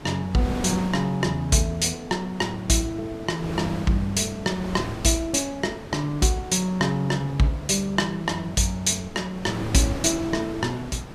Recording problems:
wind on the microphone; below 840 Hz, SNR 12 dB

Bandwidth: 14.5 kHz